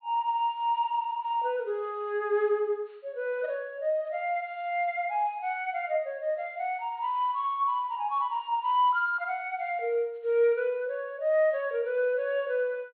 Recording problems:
low-pass filter; nothing above 4.4 kHz

